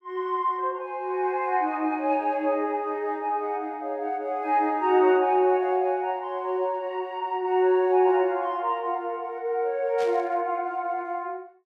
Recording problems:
static burst; at 10 s; peak -11 dB vs average level

